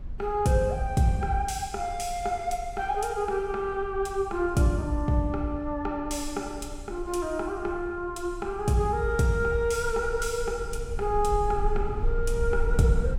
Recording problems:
rumble; below 56 Hz, strongest tone 26 Hz, SNR 10 dB

